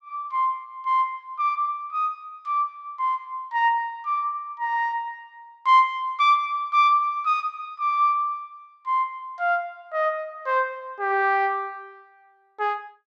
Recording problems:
none

